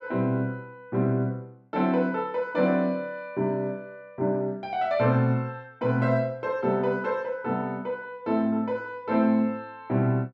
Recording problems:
none

